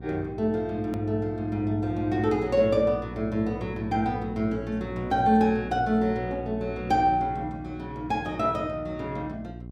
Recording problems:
hum; 60 Hz, harmonics up to 720 Hz, SNR 13 dB
hard cut with a click; at 1 s

